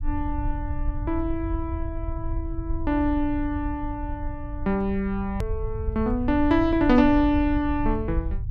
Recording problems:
rumble; below 78 Hz, SNR 7 dB
click at an edit; at 5.5 s

